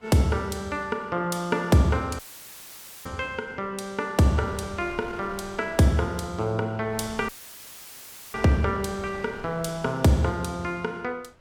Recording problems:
wind noise; below 1.2 kHz, SNR 19 dB
audio cutting out; at 2 s for 1 s and at 7.5 s for 1 s; filled with static

